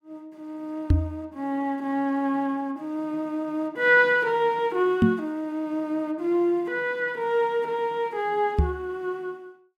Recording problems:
microphone bump; at 1 s, at 5 s and at 8.5 s; peak +9 dB vs average level

